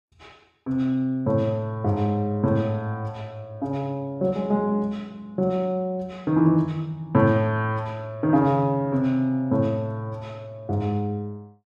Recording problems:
none

